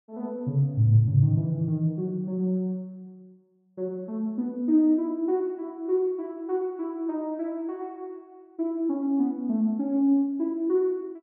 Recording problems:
none

